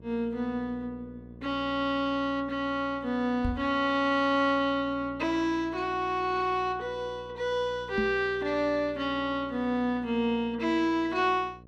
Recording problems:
mains hum; 60 Hz, harmonics up to 660 Hz, SNR 20 dB
microphone bump; at 3.5 s and at 8 s; peak 0 dB vs average level

